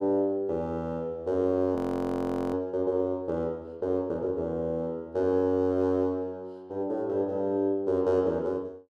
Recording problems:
audio freezing; at 2 s for 1 s

